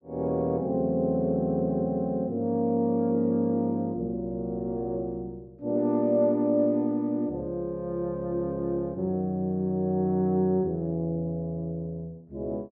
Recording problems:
none

